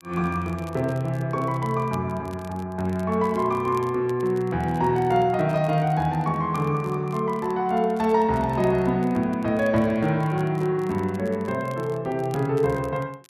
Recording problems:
crackling; vinyl, SNR 27 dB

